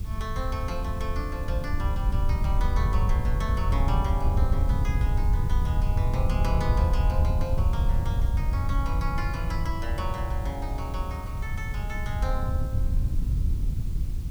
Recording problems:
hiss; slope 0 dB per octave, SNR 17 dB
wind on the microphone; below 88 Hz, SNR -7 dB

